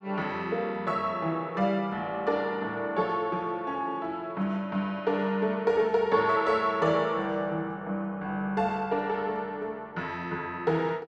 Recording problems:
none

